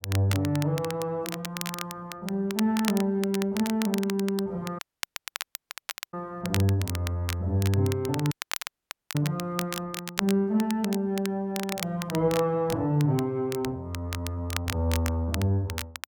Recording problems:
crackling; vinyl, SNR 9 dB
audio cutting out; at 5 s for 1.5 s and at 8.5 s for 1 s

